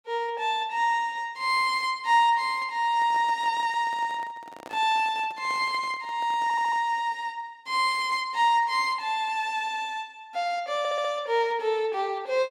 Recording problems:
microphone handling noise; from 3 to 7 s; peak -11 dB vs average level
audio stuttering; at 6.5 s and at 11 s

